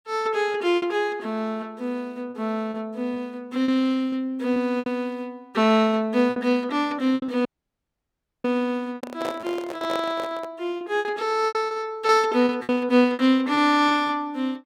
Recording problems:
lost packets; 9% of the sound replaced, filled with repeated pitch periods
dropout; at 7.5 s for 1 s
handling noise; from 9 to 10 s; peak -3 dB vs average level

